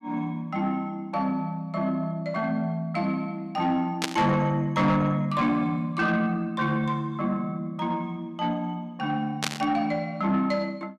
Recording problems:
distortion; soft clipping, signal-to-distortion ratio 11 dB
static burst; at 4 s and at 9.5 s; peak +4 dB vs average level

